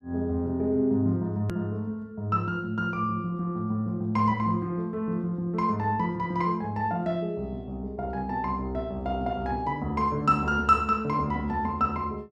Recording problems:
hard cut with a click; at 1.5 s

